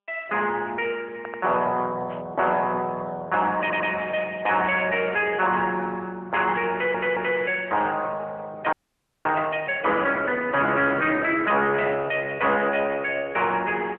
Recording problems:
phone line; 240 Hz to 3.1 kHz, AMR-NB
distortion; soft clipping, signal-to-distortion ratio 11 dB
stutter; at 1 s, at 3.5 s and at 6.5 s
static burst; 4 times, first at 2 s; peak -15 dB vs average level
frozen audio; at 8.5 s for 0.5 s

